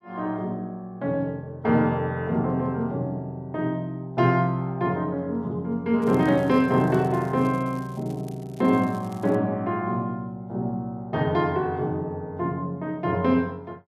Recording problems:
crackling; from 6 to 9.5 s; loose cable, SNR 27 dB

